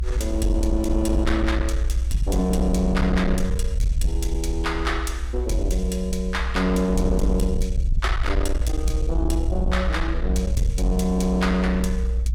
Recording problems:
distortion; soft clipping, signal-to-distortion ratio 11 dB
low-frequency rumble; below 60 Hz, SNR 2 dB

